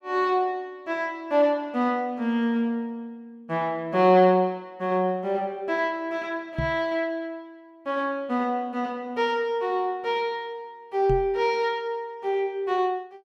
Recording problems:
microphone thump; at 6.5 s and at 11 s; peak 0 dB vs average level

